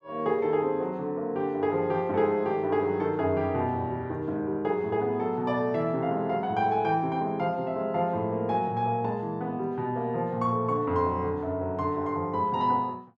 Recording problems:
none

